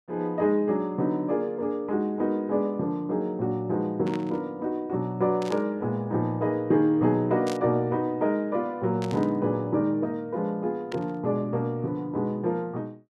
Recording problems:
burst of static; 5 times, first at 4 s; peak -7 dB vs average level

